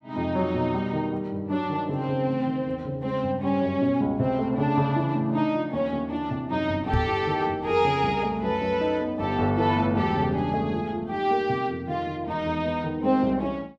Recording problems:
microphone thump; at 7 s; peak +3 dB vs average level

